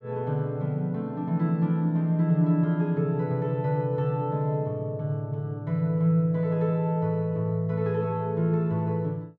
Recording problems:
none

